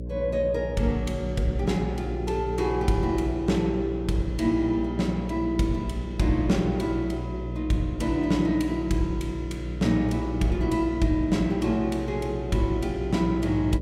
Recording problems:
hum; 60 Hz, harmonics up to 600 Hz, SNR 8 dB

